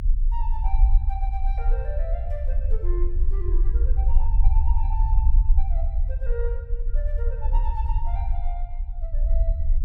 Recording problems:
rumble; below 50 Hz, SNR -13 dB

